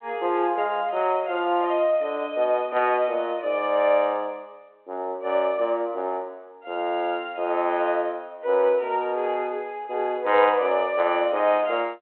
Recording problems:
phone line; 280 Hz to 3.3 kHz, G.726

